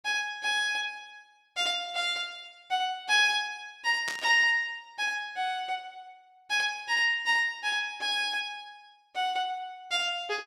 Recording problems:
static burst; at 4 s; peak -4 dB vs average level

